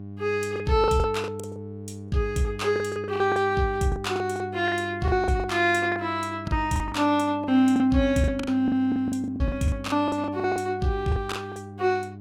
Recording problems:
electrical hum; 50 Hz, harmonics up to 700 Hz, SNR 15 dB
lost packets; 14% of the sound replaced, filled with the last packet

